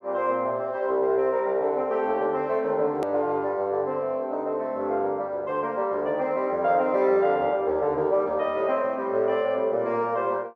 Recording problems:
hard cut with a click; at 3 s

